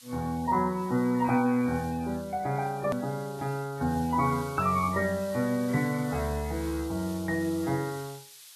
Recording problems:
codec artefacts; MP3, log-spectral distance 2 dB, nothing above 13.1 kHz
hiss; slope +6 dB per octave, SNR 19 dB
edit click; at 3 s

